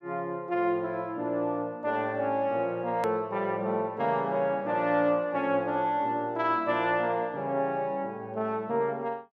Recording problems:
edit click; at 3 s

